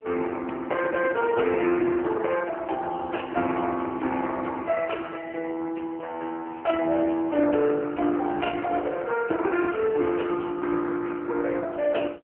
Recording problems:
telephone audio; 260 Hz to 3.1 kHz, AMR-NB

